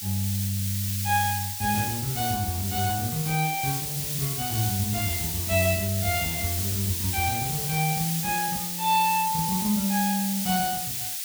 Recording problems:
background hiss; SNR 1 dB

